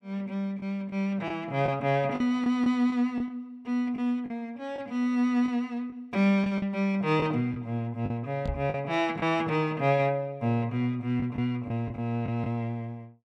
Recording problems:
lost packets; 5% of the sound replaced, filled with the last packet
microphone bump; at 8.5 s; peak -1 dB vs average level

